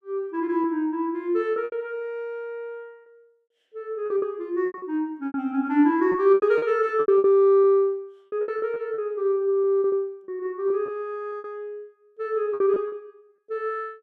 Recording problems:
packet loss; 10% of the sound replaced, filled with repeated pitch periods

